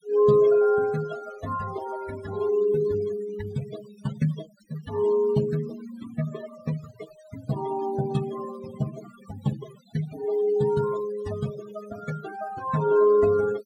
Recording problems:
noise reduction artefacts; signal-to-artefact ratio 15 dB

